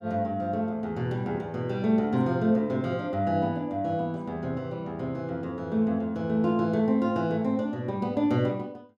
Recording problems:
none

